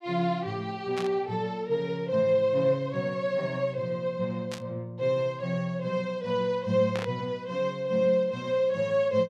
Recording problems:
burst of static; at 1 s, at 4.5 s and at 7 s; peak -4 dB vs average level

